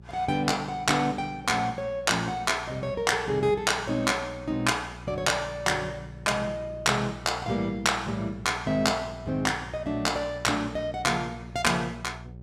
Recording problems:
hum; 60 Hz, harmonics up to 600 Hz, SNR 17 dB

